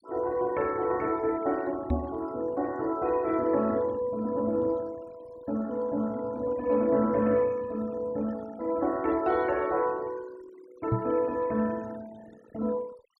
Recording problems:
denoising artefacts; signal-to-artefact ratio 21 dB
microphone bump; at 2 s and at 11 s; peak +4 dB vs average level

